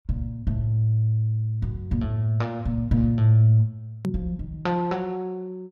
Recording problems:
click at an edit; at 4 s

